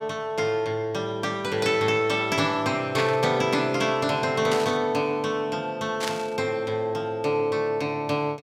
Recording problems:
burst of static; at 3 s, at 4.5 s and at 6 s; peak -1 dB vs average level

